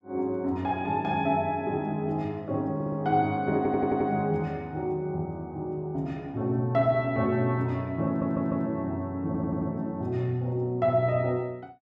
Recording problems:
stutter; 4 times, first at 2.5 s

